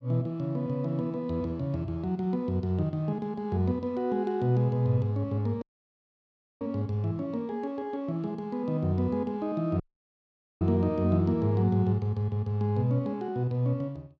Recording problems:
dropout; at 5.5 s for 1 s and at 10 s for 1 s

